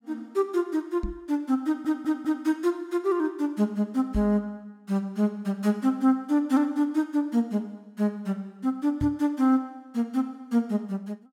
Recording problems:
microphone thump; at 1 s, at 4 s and at 9 s; peak -1 dB vs average level
stutter; at 1.5 s

